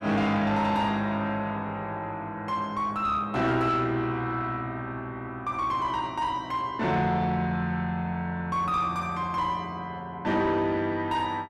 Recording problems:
distorted audio; soft clipping, signal-to-distortion ratio 10 dB

